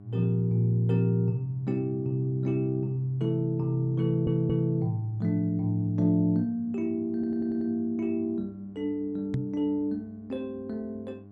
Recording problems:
hum; 50 Hz, harmonics up to 800 Hz, SNR 21 dB
stutter; at 4 s and at 7 s
knock on the microphone; at 9.5 s; peak +2 dB vs average level

